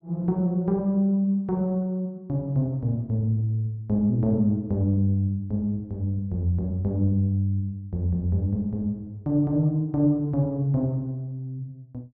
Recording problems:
none

